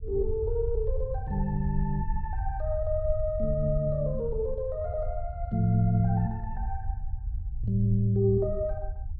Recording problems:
low-frequency rumble; below 72 Hz, SNR 7 dB

